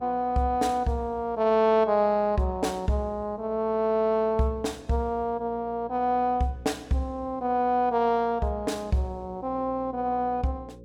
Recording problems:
electrical hum; 60 Hz, harmonics up to 540 Hz, SNR 23 dB

